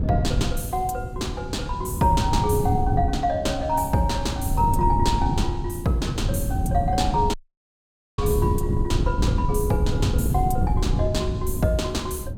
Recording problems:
wind noise; below 150 Hz, SNR 1 dB
audio cutting out; at 7.5 s for 1 s

